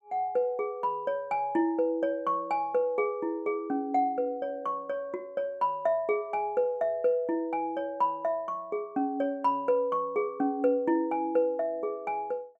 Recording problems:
none

